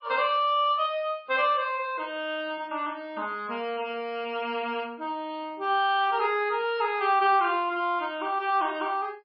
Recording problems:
lossy codec; MP3, log-spectral distance 2 dB, nothing above 4.8 kHz

